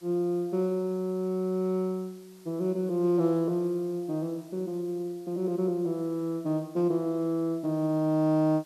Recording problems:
background hiss; slope -1 dB per octave, SNR 28 dB

